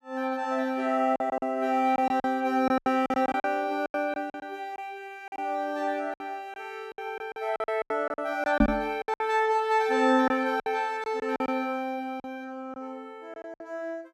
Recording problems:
lost packets; 11% of the sound replaced, filled with silence
knock on the microphone; at 8.5 s; peak +9 dB vs average level

